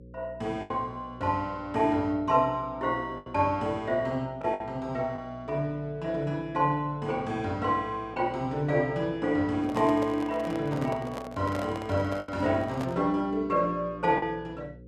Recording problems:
electrical hum; 60 Hz, harmonics up to 540 Hz, SNR 21 dB
packet loss; 3% of the sound replaced, filled with the last packet
handling noise; from 9.5 to 13 s; peak -3 dB vs average level

